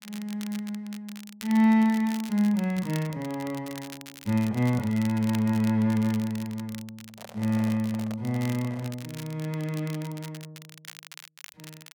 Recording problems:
crackling; vinyl, SNR 18 dB
handling noise; from 7 to 9 s; peak -12 dB vs average level

